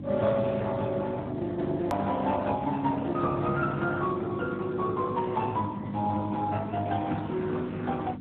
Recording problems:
treble cut off; nothing above 4 kHz
codec artefacts; Opus, then Speex, log-spectral distance 3 dB
hum; 50 Hz, harmonics up to 350 Hz, SNR 9 dB
hard cut with a click; at 2 s

